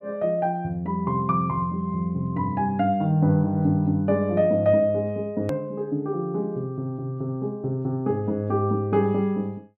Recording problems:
hard cut with a click; at 5.5 s

